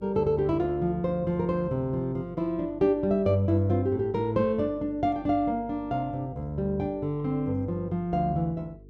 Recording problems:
electrical hum; 50 Hz, harmonics up to 450 Hz, SNR 22 dB

